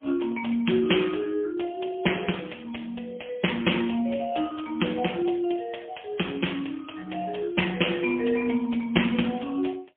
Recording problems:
phone line; 190 Hz to 3.3 kHz, AMR-NB, then MP3

